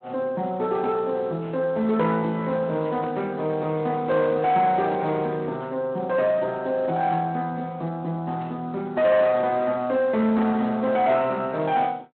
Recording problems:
phone line; 170 Hz to 3.8 kHz, Speex
distorted audio; soft clipping, signal-to-distortion ratio 11 dB
burst of static; at 3 s; peak -18 dB vs average level

